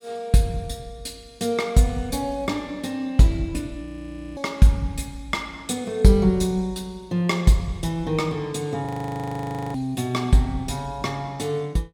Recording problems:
audio freezing; at 4 s for 0.5 s and at 9 s for 1 s

